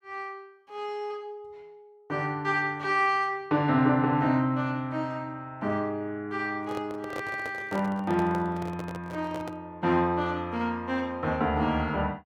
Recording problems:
microphone handling noise; from 6.5 to 9.5 s; peak -4 dB vs average level

